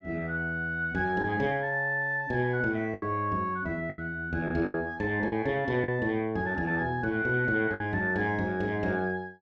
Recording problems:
packet loss; 5% of the sound replaced, filled with the last packet

